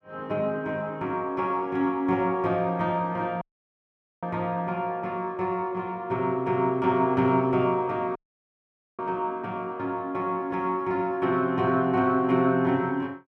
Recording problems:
audio cutting out; at 3.5 s for 1 s and at 8 s for 1 s

